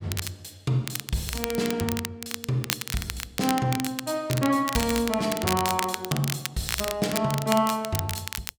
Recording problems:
crackling; vinyl, SNR 5 dB

